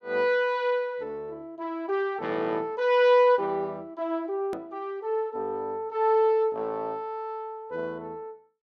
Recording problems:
hard cut with a click; at 4.5 s

